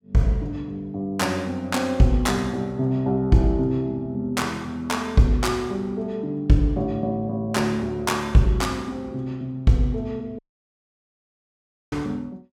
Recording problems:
audio cutting out; at 10 s for 1.5 s

